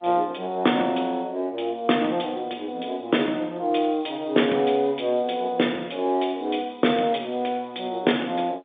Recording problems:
phone line; 190 Hz to 3.6 kHz, G.711

